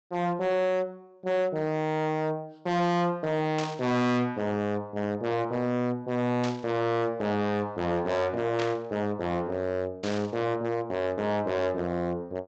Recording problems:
treble missing; nothing above 8 kHz
distortion; hard clipping, signal-to-distortion ratio 6 dB
burst of static; 4 times, first at 3.5 s; peak -3 dB vs average level

